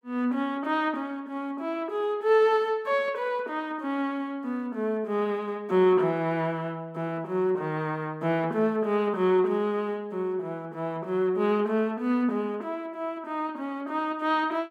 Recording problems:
none

